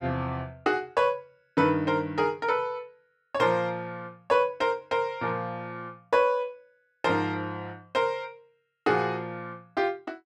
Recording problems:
none

